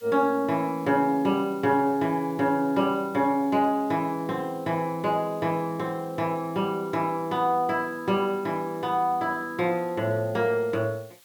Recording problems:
background hiss; slope +2 dB per octave, SNR 27 dB

